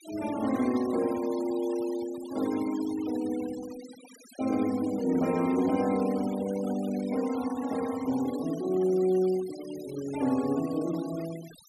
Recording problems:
denoising artefacts; signal-to-artefact ratio 17 dB

